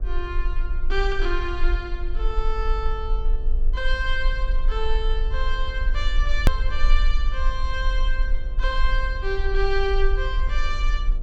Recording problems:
hum; 60 Hz, harmonics up to 1.4 kHz, SNR 20 dB
rumble; below 40 Hz, strongest tone 20 Hz, SNR -2 dB
edit click; at 6.5 s

